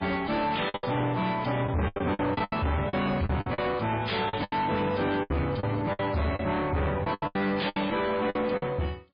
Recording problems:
codec artefacts; MP3, log-spectral distance 4 dB, nothing above 4.2 kHz
distortion; soft clipping, signal-to-distortion ratio 6 dB
packet loss; 14% of the sound replaced, filled with the last packet

